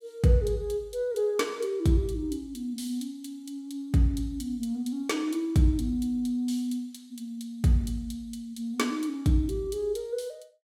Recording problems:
none

